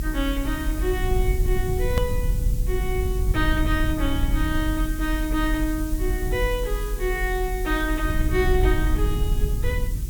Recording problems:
electrical hum; 50 Hz, harmonics up to 400 Hz, SNR 13 dB
background hiss; slope +4 dB per octave, SNR 13 dB
low-frequency rumble; below 68 Hz, SNR 0 dB
click at an edit; at 2 s

